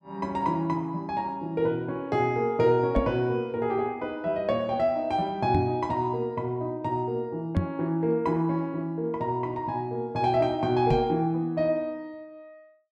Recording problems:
microphone bump; 4 times, first at 3 s; peak +5 dB vs average level

